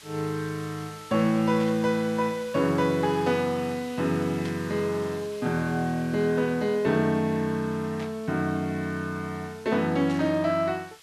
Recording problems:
hiss; slope +1 dB per octave, SNR 21 dB
burst of static; 4 times, first at 1.5 s; peak -10 dB vs average level

